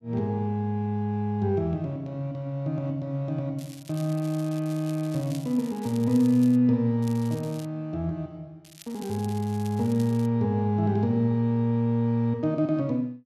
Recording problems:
crackling; from 3.5 to 6.5 s, at 7 s and from 8.5 to 10 s; loose cable, SNR 21 dB

